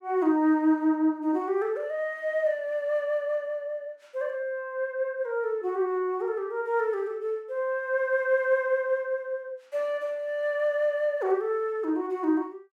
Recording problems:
none

